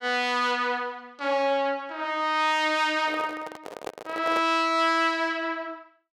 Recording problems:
microphone handling noise; from 3 to 4.5 s; peak -4 dB vs average level

